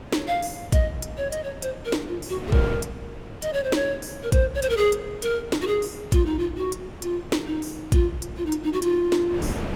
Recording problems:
wind on the microphone; below 540 Hz, SNR 13 dB

